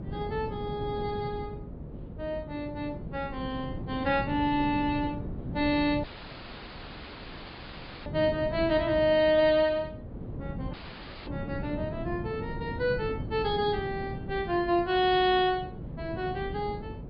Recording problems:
low-pass filter; nothing above 4.6 kHz
codec artefacts; MP3, log-spectral distance 3 dB
hum; 50 Hz, harmonics up to 600 Hz, SNR 20 dB
wind on the microphone; below 260 Hz, SNR 10 dB
audio cutting out; at 6 s for 2 s and at 11 s for 0.5 s

